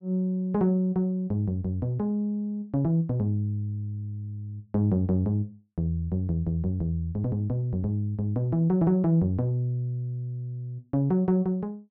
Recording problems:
none

